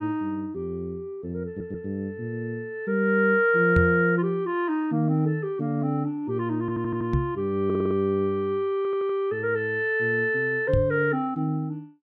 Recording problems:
stutter; 4 times, first at 1.5 s
microphone thump; at 4 s, at 7 s and at 11 s; peak +4 dB vs average level

